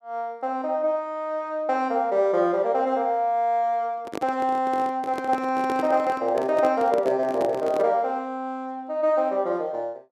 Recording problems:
handling noise; from 4 to 8 s; peak -3 dB vs average level

